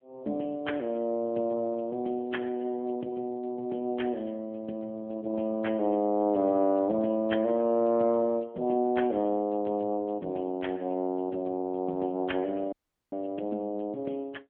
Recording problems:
telephone audio; 170 Hz to 3.3 kHz, AMR-NB
dropout; at 13 s

